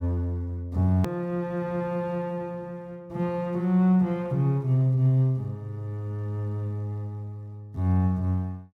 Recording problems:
edit click; at 1 s

